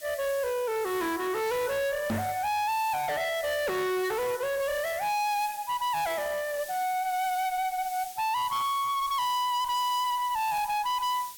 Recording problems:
distortion; hard clipping, uneven, signal-to-distortion ratio 7 dB
background hiss; SNR 14 dB
microphone bump; at 2 s; peak +2 dB vs average level

